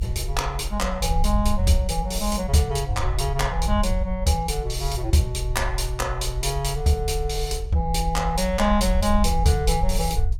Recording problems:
rumble; below 62 Hz, SNR 4 dB

